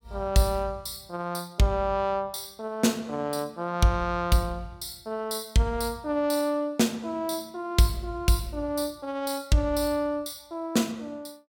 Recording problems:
none

